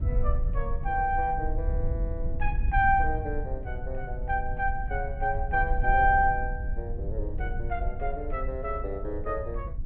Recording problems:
treble missing; nothing above 4.2 kHz
rumble; below 62 Hz, SNR 4 dB

